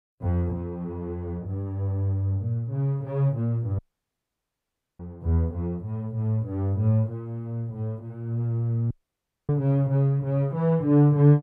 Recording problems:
audio cutting out; at 4 s for 1 s and at 9 s for 0.5 s

